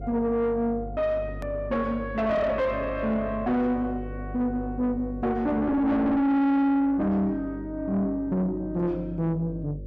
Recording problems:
distorted audio; soft clipping, signal-to-distortion ratio 6 dB
hum; 50 Hz, harmonics up to 600 Hz, SNR 14 dB
click at an edit; at 1.5 s

